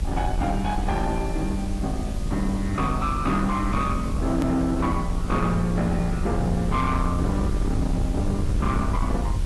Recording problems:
lossy codec; AAC, log-spectral distance 2 dB, nothing above 13.1 kHz
distorted audio; soft clipping, signal-to-distortion ratio 10 dB
hum; 60 Hz, harmonics up to 660 Hz, SNR 20 dB
hiss; slope 0 dB per octave, SNR 19 dB
low-frequency rumble; below 100 Hz, SNR 3 dB
hard cut with a click; at 4.5 s

